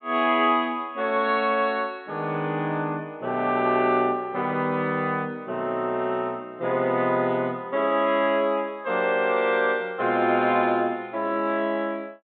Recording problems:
treble cut off; nothing above 4 kHz

